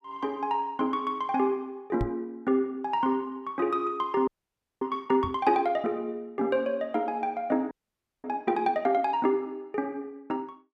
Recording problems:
microphone bump; at 2 s and at 5 s; peak +1 dB vs average level
frozen audio; at 4.5 s for 0.5 s and at 7.5 s for 0.5 s

